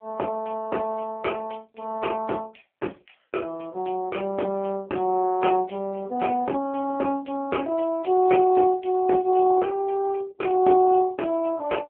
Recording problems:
telephone audio; 240 Hz to 2.9 kHz, AMR-NB

